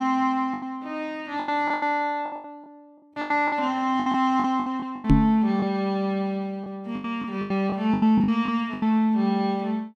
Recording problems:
packet loss; 14% of the sound replaced, filled with the last packet
knock on the microphone; at 5 s; peak +10 dB vs average level

